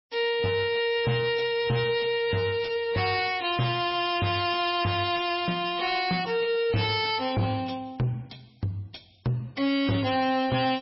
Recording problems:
lossy codec; MP3, log-spectral distance 5 dB, nothing above 5.2 kHz
distorted audio; soft clipping, signal-to-distortion ratio 11 dB

